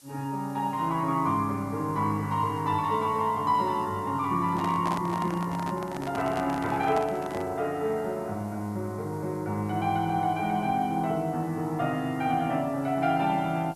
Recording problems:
codec artefacts; Opus, log-spectral distance 2 dB
background hiss; SNR 26 dB
handling noise; from 4.5 to 7.5 s; peak -3 dB vs average level

